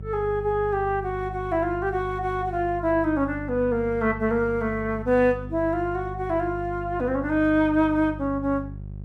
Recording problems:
hum; 50 Hz, harmonics up to 400 Hz, SNR 12 dB

